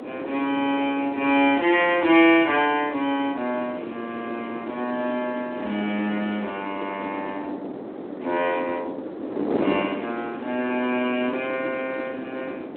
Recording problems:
phone line; 240 Hz to 3.6 kHz, Speex
wind on the microphone; below 530 Hz, SNR 9 dB

